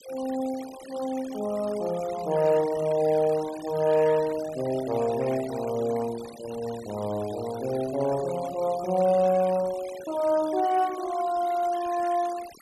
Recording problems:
noise reduction artefacts; signal-to-artefact ratio 18 dB

